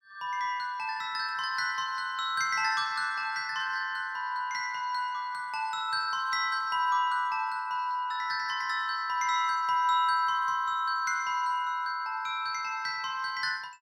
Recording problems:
none

